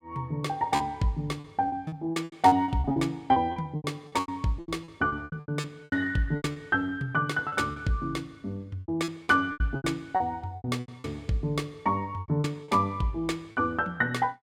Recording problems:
lost packets; 15% of the sound replaced, filled with repeated pitch periods

